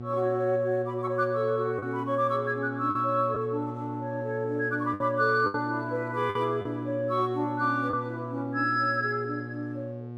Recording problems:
hum; 60 Hz, harmonics up to 840 Hz, SNR 10 dB
lost packets; 3% of the sound replaced, filled with the last packet

